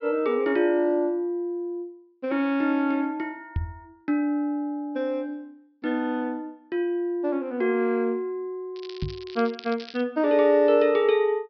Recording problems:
treble missing; nothing above 5.5 kHz
knock on the microphone; at 3.5 s and at 9 s; peak +1 dB vs average level
crackling; from 9 to 10 s; loose cable, SNR 18 dB

